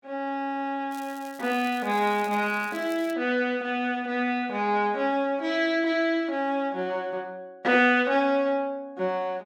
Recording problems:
crackling; from 1 to 3 s; loose cable, SNR 22 dB

